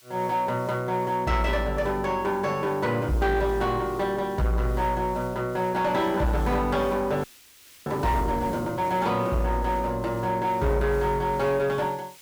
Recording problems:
distorted audio; soft clipping, signal-to-distortion ratio 11 dB
background hiss; SNR 23 dB
audio freezing; at 7 s for 0.5 s

